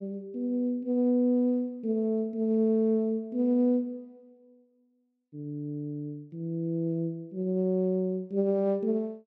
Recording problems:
none

